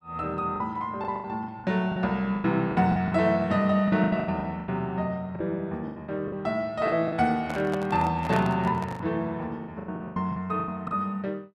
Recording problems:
lost packets; 14% of the sound replaced, filled with the last packet
handling noise; from 7.5 to 9 s; peak -3 dB vs average level

